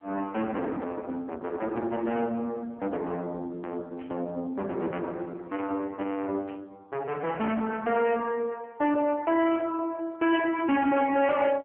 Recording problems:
telephone audio; 240 Hz to 3.3 kHz, AMR-NB
distortion; soft clipping, signal-to-distortion ratio 9 dB
static burst; 4 times, first at 2 s; peak -13 dB vs average level

